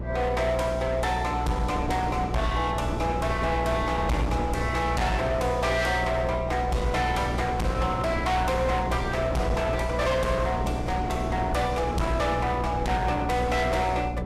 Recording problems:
lossy compression; Vorbis, log-spectral distance 2 dB, nothing above 13.5 kHz
distorted audio; hard clipping, uneven, signal-to-distortion ratio 7 dB
electrical hum; 60 Hz, harmonics up to 600 Hz, SNR 7 dB
wind noise; below 550 Hz, SNR 8 dB

